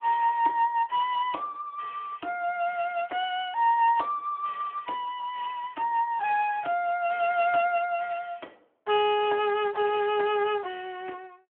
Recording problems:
phone line; 300 Hz to 3.3 kHz, Speex

